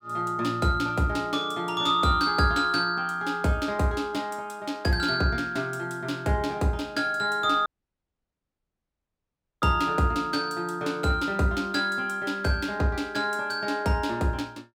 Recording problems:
audio cutting out; at 7.5 s for 2 s

